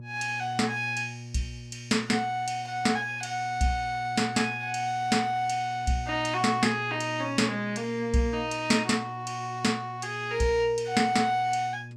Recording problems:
hum; 60 Hz, harmonics up to 600 Hz, SNR 15 dB

